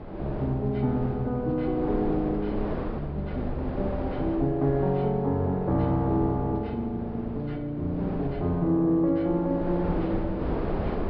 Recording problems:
low-pass filter; nothing above 5.5 kHz
wind noise; below 520 Hz, SNR 8 dB

